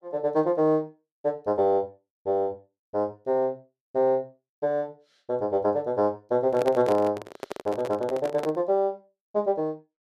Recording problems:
microphone handling noise; from 6.5 to 8.5 s; peak 0 dB vs average level

